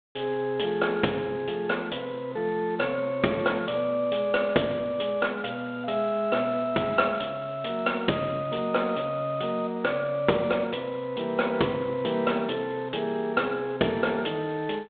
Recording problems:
telephone audio; 240 Hz to 3.7 kHz, G.726

